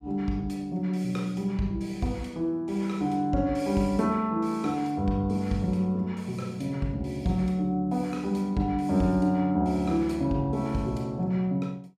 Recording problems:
none

